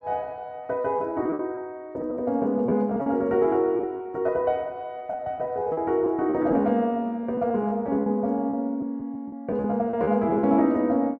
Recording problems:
lost packets; 10% of the sound replaced, filled with repeated pitch periods

